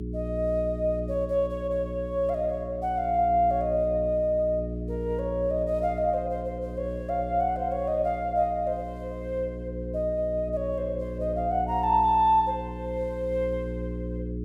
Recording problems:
hum; 60 Hz, harmonics up to 420 Hz, SNR 9 dB

